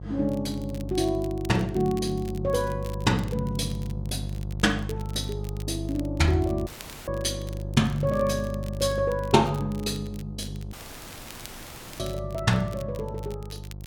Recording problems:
hum; 50 Hz, harmonics up to 700 Hz, SNR 7 dB
crackle; vinyl, SNR 22 dB
dropout; at 6.5 s and at 11 s for 1.5 s

